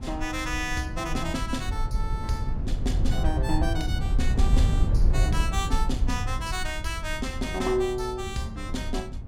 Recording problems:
low-frequency rumble; below 80 Hz, SNR -2 dB

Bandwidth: 17 kHz